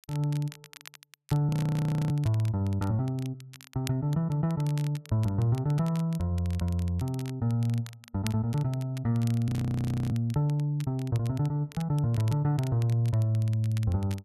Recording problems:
crackle; vinyl, SNR 21 dB
frozen audio; at 1.5 s for 0.5 s and at 9.5 s for 0.5 s

